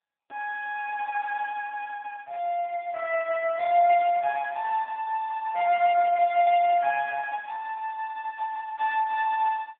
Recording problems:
telephone audio; 280 Hz to 2.5 kHz, AMR-NB

